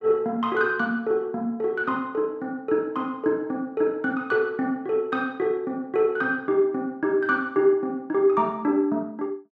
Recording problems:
none

